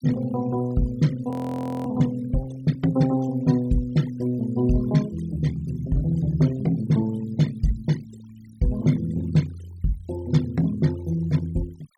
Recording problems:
noise reduction artefacts; signal-to-artefact ratio 20 dB
audio freezing; at 1.5 s for 0.5 s

